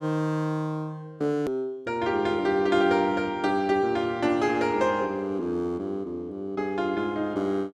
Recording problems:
click at an edit; at 1.5 s

